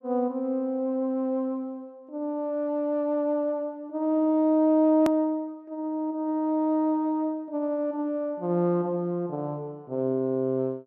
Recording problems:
edit click; at 5 s

